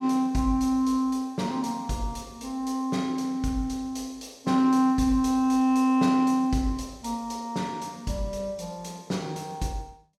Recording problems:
none

